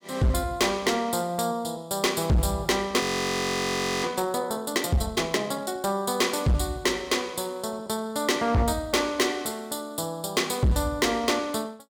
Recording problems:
distorted audio; hard clipping, signal-to-distortion ratio 10 dB
audio freezing; at 3 s for 1 s

